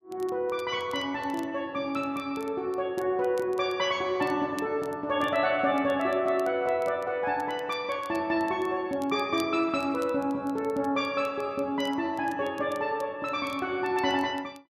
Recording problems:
crackling; vinyl, SNR 26 dB

